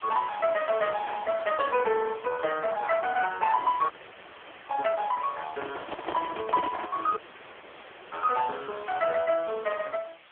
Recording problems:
phone line; 320 Hz to 3.4 kHz, AMR-NB
background hiss; SNR 21 dB
audio cutting out; at 4 s for 1 s and at 7 s for 1 s
handling noise; from 5.5 to 7 s; peak -2 dB vs average level

